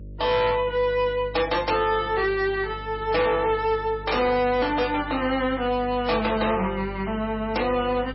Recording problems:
lossy compression; MP3, log-spectral distance 3 dB, nothing above 5.5 kHz
distortion; hard clipping, signal-to-distortion ratio 11 dB
hum; 50 Hz, harmonics up to 600 Hz, SNR 16 dB

